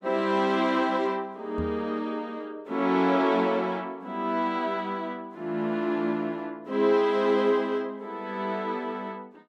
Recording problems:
microphone thump; at 1.5 s; peak -3 dB vs average level

